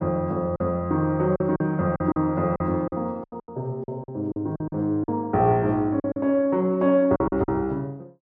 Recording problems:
packet loss; 11% of the sound replaced, filled with silence

